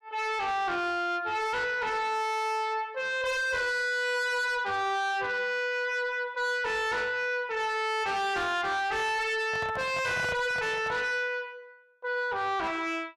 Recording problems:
distortion; soft clipping, signal-to-distortion ratio 8 dB
microphone handling noise; from 9.5 to 11 s; peak -2 dB vs average level

